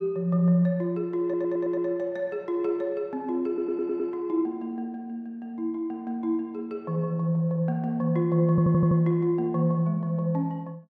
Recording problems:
stutter; at 1 s, at 3.5 s and at 8.5 s

